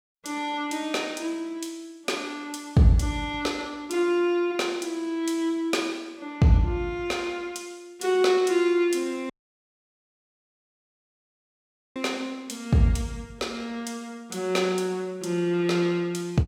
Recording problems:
audio cutting out; at 9.5 s for 2.5 s

